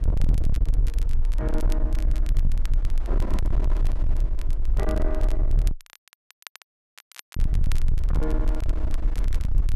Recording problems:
distortion; hard clipping, signal-to-distortion ratio 6 dB
low-frequency rumble; below 46 Hz, strongest tone 20 Hz, SNR -9 dB
wind noise; below 840 Hz, SNR 11 dB
crackle; vinyl, SNR 12 dB
dropout; at 5.5 s for 1.5 s

